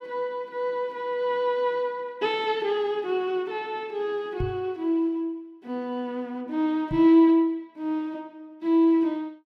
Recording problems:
microphone bump; at 4.5 s and at 7 s; peak -2 dB vs average level

